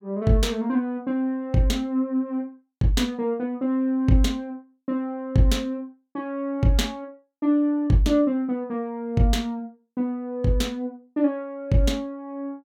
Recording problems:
none

